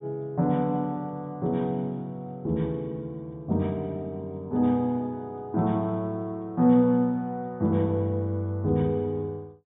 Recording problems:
treble missing; nothing above 4 kHz

